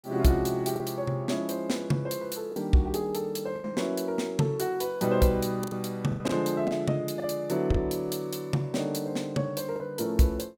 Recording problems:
lost packets; 5% of the sound replaced, filled with the last packet

